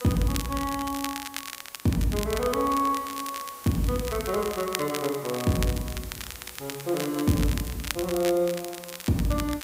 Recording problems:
hiss; slope -1 dB per octave, SNR 16 dB
crackle; vinyl, SNR 9 dB

